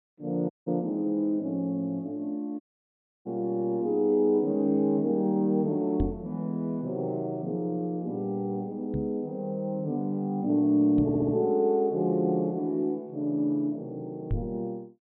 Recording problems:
treble cut off; nothing above 4 kHz
dropout; at 0.5 s and at 2.5 s for 0.5 s
knock on the microphone; 4 times, first at 6 s; peak +2 dB vs average level
audio stuttering; at 11 s

